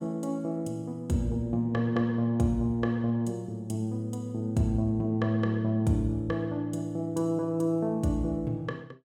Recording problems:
none

